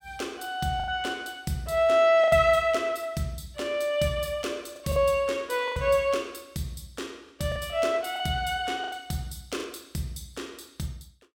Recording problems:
packet loss; 5% of the sound replaced, filled with the last packet

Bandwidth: 17.5 kHz